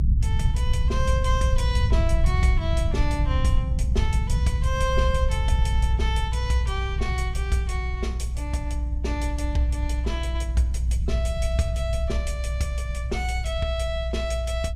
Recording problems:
low-frequency rumble; below 76 Hz, strongest tone 60 Hz, SNR -4 dB

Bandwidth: 15 kHz